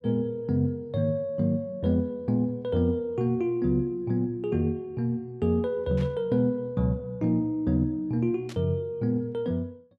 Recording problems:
burst of static; at 6 s and at 8.5 s; peak -13 dB vs average level

